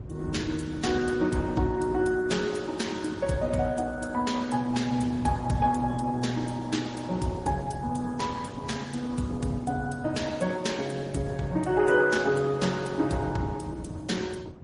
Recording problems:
lossy compression; Opus, then MP3, log-spectral distance 4 dB, nothing above 10.4 kHz
wind on the microphone; below 190 Hz, SNR 14 dB

